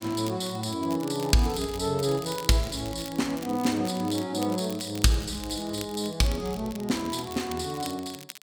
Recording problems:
crackling; vinyl, SNR 15 dB

